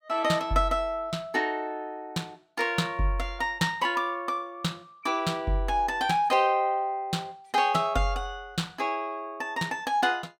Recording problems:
none

